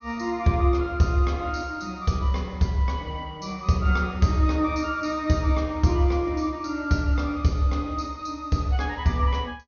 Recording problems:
treble missing; nothing above 6.4 kHz

